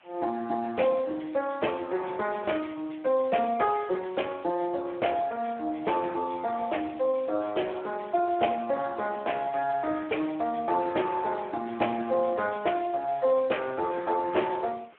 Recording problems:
phone line; 280 Hz to 3.1 kHz, Speex
hiss; SNR 28 dB

